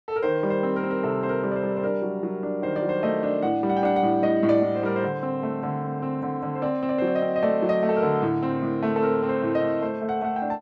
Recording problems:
none

